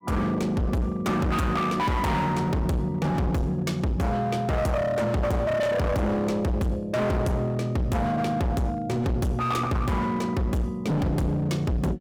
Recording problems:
distortion; hard clipping, signal-to-distortion ratio 6 dB

